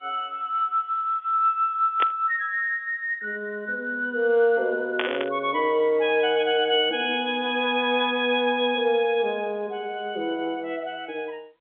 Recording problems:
phone line; 280 Hz to 3.7 kHz, G.711
static burst; at 2 s and at 5 s; peak +2 dB vs average level

